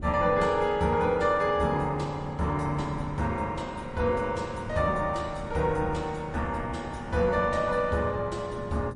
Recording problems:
codec artefacts; MP3, log-spectral distance 2 dB, nothing above 10.4 kHz
wind noise; below 230 Hz, SNR 15 dB

